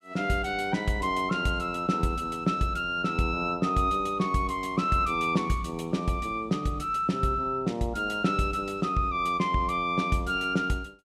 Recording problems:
none

